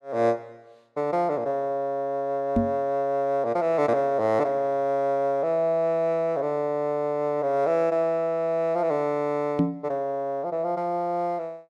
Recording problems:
microphone thump; at 2.5 s and at 9.5 s; peak +5 dB vs average level

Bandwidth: 12.5 kHz